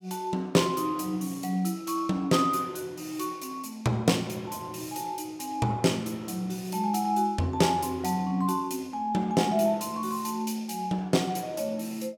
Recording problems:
none

